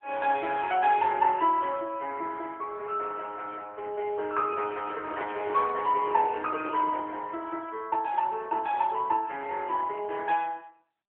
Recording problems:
telephone audio; 340 Hz to 3.3 kHz, AMR-NB
microphone handling noise; from 4.5 to 7 s; peak -8 dB vs average level

